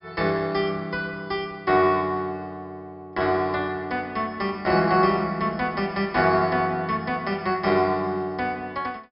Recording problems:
treble missing; nothing above 5.5 kHz

